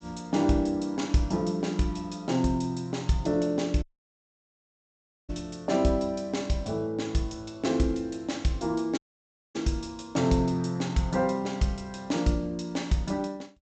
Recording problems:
treble cut off; nothing above 8 kHz
dropout; at 4 s for 1.5 s and at 9 s for 0.5 s

